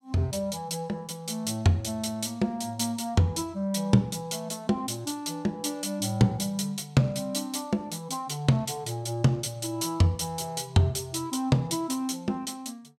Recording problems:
none

